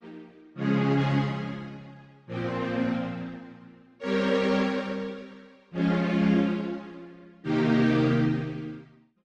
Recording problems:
lossy codec; Opus, log-spectral distance 3 dB, nothing above 11.6 kHz

